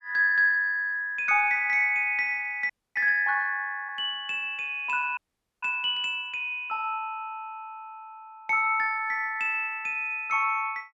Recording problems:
frozen audio; at 2.5 s and at 5 s

